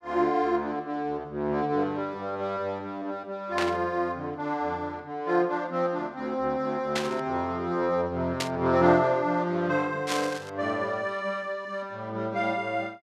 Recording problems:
burst of static; 4 times, first at 3.5 s; peak +3 dB vs average level

